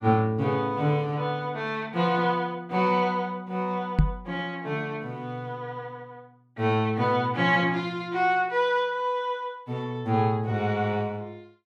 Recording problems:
knock on the microphone; at 4 s; peak +9 dB vs average level

